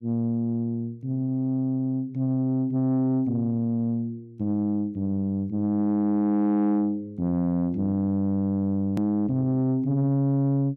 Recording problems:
distorted audio; soft clipping, signal-to-distortion ratio 10 dB
hard cut with a click; at 9 s

